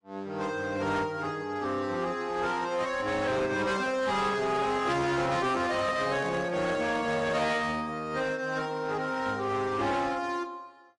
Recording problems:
lossy codec; AAC, log-spectral distance 3 dB, nothing above 10.7 kHz
distorted audio; hard clipping, signal-to-distortion ratio 10 dB
microphone handling noise; from 3.5 to 7.5 s; peak -4 dB vs average level

